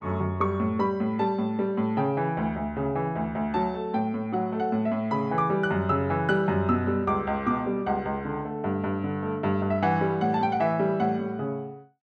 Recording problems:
none

